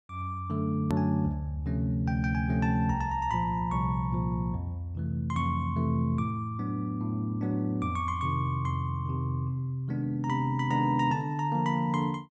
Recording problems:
click at an edit; at 1 s

